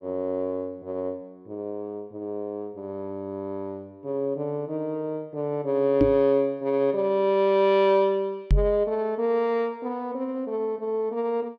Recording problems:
microphone thump; at 6 s and at 8.5 s; peak +7 dB vs average level

